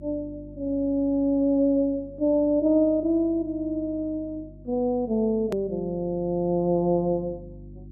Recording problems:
hum; 50 Hz, harmonics up to 350 Hz, SNR 21 dB
edit click; at 5.5 s

